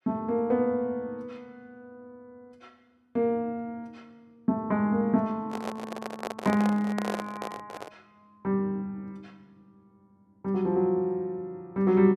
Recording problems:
handling noise; from 5.5 to 8 s; peak -1 dB vs average level

